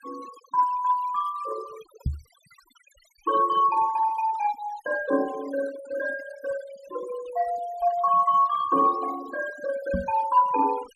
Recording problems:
noise reduction artefacts; signal-to-artefact ratio 17 dB
microphone thump; at 2 s and at 10 s; peak +1 dB vs average level

